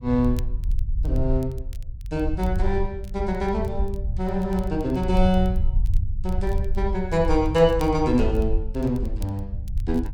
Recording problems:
low-frequency rumble; below 68 Hz, SNR 4 dB
crackle; vinyl, SNR 28 dB

